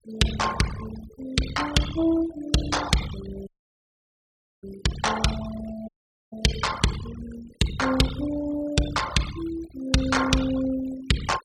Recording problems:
denoising artefacts; signal-to-artefact ratio 11 dB
dropout; at 3.5 s for 1 s and at 6 s

